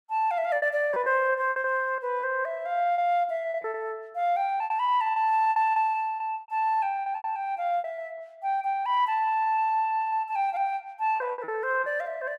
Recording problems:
packet loss; 11% of the sound replaced, filled with repeated pitch periods

